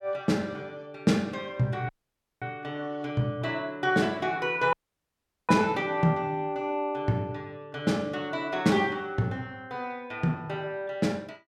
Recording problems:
dropout; at 2 s for 0.5 s and at 4.5 s for 1 s

